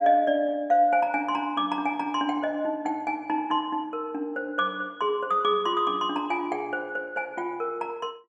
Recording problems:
none

